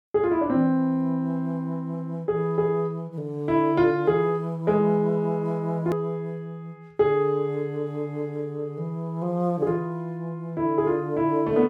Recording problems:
edit click; at 6 s

